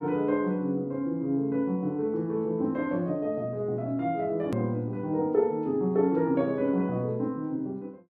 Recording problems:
hard cut with a click; at 4.5 s

